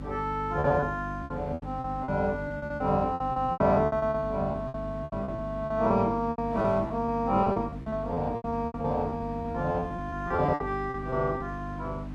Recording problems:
hum; 50 Hz, harmonics up to 300 Hz, SNR 9 dB
wind noise; below 1 kHz, SNR 21 dB
packet loss; 16% of the sound replaced, filled with repeated pitch periods

